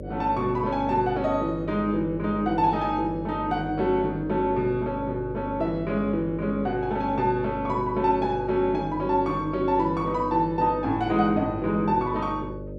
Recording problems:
electrical hum; 50 Hz, harmonics up to 600 Hz, SNR 11 dB

